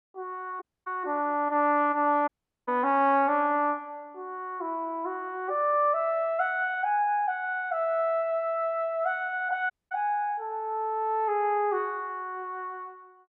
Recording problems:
dropout; at 0.5 s, at 2.5 s and at 9.5 s

